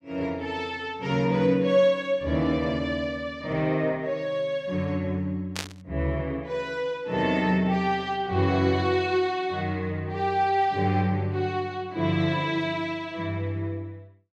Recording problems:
burst of static; at 5.5 s; peak 0 dB vs average level

